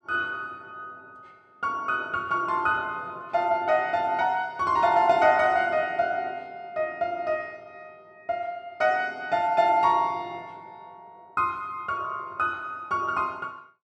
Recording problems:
none

